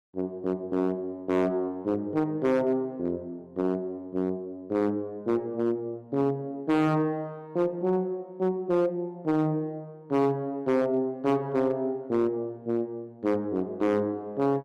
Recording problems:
distortion; hard clipping, signal-to-distortion ratio 12 dB

